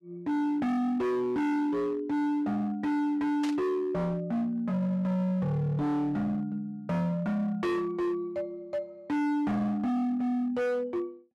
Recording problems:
distorted audio; hard clipping, signal-to-distortion ratio 7 dB
burst of static; at 3.5 s; peak -6 dB vs average level

